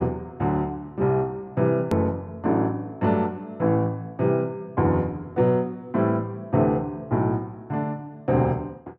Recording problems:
click at an edit; at 2 s

